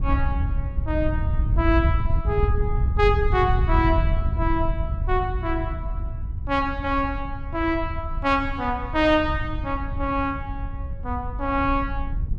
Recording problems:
wind on the microphone; below 90 Hz, SNR 2 dB

